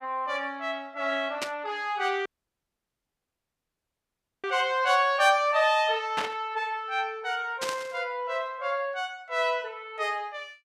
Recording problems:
static burst; at 1.5 s, at 6 s and at 7.5 s; peak 0 dB vs average level
dropout; at 2.5 s for 2 s

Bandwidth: 15 kHz